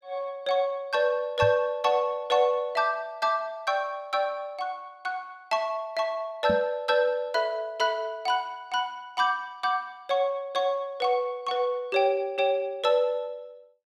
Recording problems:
microphone thump; at 1.5 s and at 6.5 s; peak -1 dB vs average level

